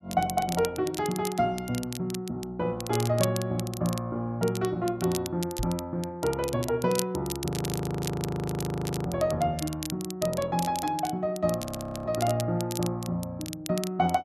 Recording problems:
crackle; vinyl, SNR 10 dB
microphone bump; at 5.5 s; peak 0 dB vs average level
frozen audio; at 7.5 s for 1.5 s and at 12 s

